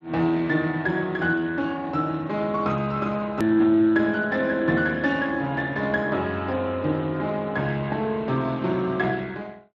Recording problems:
lossy compression; Speex, log-spectral distance 3 dB, nothing above 13.3 kHz
click at an edit; at 3.5 s

